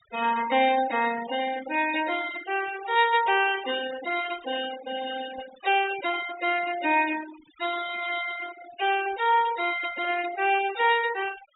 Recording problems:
treble cut off; nothing above 4 kHz
noise reduction artefacts; signal-to-artefact ratio 14 dB

